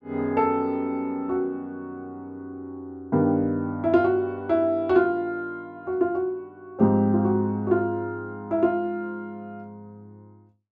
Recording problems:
none

